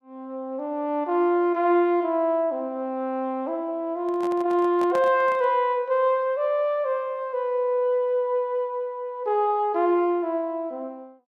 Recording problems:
handling noise; from 4 to 5.5 s; peak -6 dB vs average level

